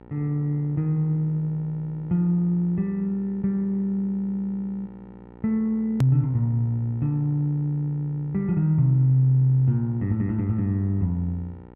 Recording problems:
hum; 60 Hz, harmonics up to 1.9 kHz, SNR 22 dB
hard cut with a click; at 6 s

